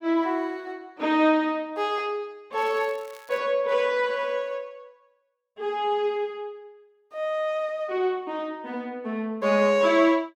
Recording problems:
crackle; at 2.5 s; loose cable, SNR 26 dB

